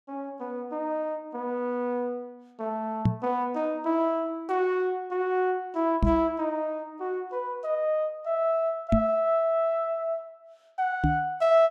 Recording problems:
knock on the microphone; 4 times, first at 3 s; peak +8 dB vs average level

